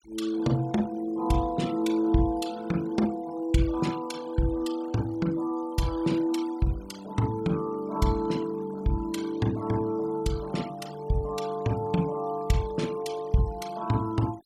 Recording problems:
denoising artefacts; signal-to-artefact ratio 20 dB

